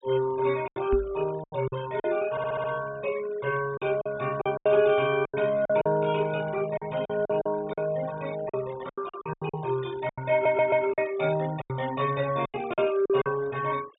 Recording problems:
low-pass filter; nothing above 4 kHz
denoising artefacts; signal-to-artefact ratio 18 dB
lost packets; 12% of the sound replaced, filled with silence
microphone thump; at 1 s; peak -1 dB vs average level
audio stuttering; at 2.5 s and at 10 s

